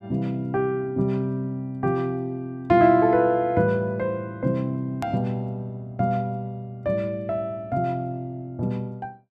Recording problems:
click at an edit; at 5 s

